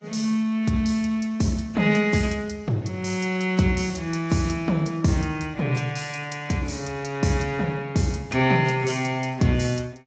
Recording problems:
codec artefacts; Speex, then AAC, log-spectral distance 4 dB, nothing above 7.3 kHz

